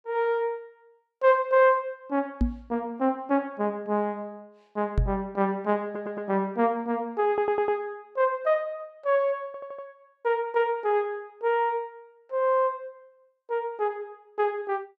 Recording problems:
microphone thump; at 2.5 s and at 5 s; peak +6 dB vs average level
audio stuttering; at 6 s, at 7.5 s and at 9.5 s

